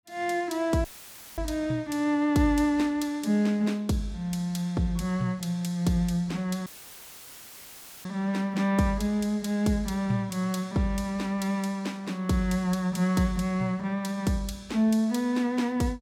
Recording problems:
dropout; at 1 s for 0.5 s and at 6.5 s for 1.5 s; filled with static

